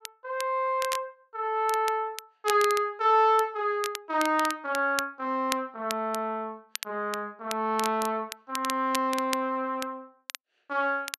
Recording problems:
crackling; vinyl, SNR 11 dB

